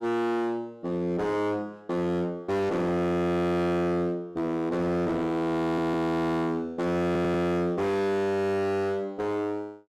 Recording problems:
distortion; hard clipping, uneven, signal-to-distortion ratio 6 dB
audio stuttering; at 5.5 s and at 7 s

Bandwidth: 13.5 kHz